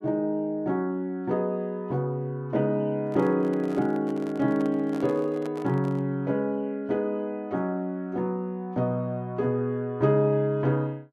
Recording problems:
microphone handling noise; from 3 to 6 s; peak -8 dB vs average level

